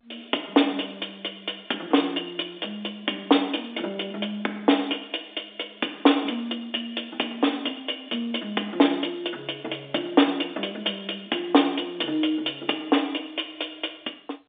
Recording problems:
telephone audio; 240 Hz to 3.7 kHz, G.711

